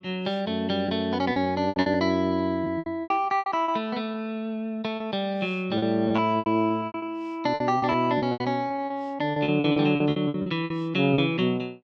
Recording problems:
lost packets; 15% of the sound replaced, filled with repeated pitch periods

